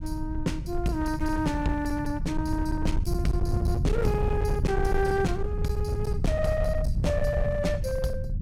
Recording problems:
distortion; hard clipping, uneven, signal-to-distortion ratio 10 dB
low-frequency rumble; below 110 Hz, SNR 1 dB

